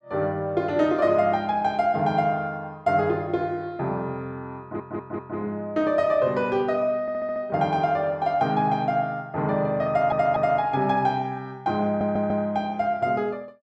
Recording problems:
audio stuttering; 4 times, first at 4.5 s

